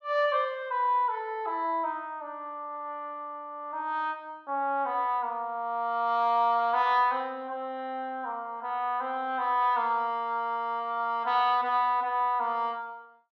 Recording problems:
none

